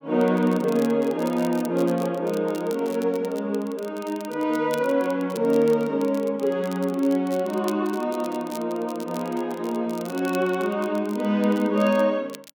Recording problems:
crackling; vinyl, SNR 21 dB

